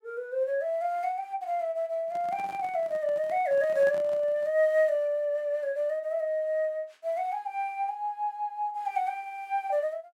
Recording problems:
microphone handling noise; from 2 to 4.5 s; peak -10 dB vs average level

